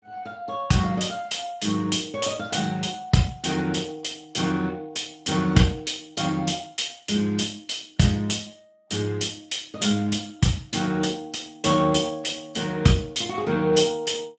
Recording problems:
lossy compression; Speex, log-spectral distance 6 dB, nothing above 7.8 kHz

